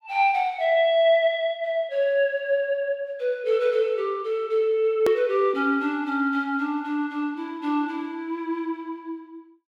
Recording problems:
hard cut with a click; at 5 s

